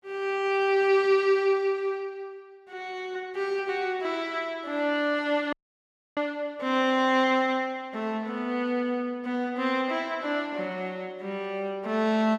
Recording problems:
dropout; at 5.5 s for 0.5 s

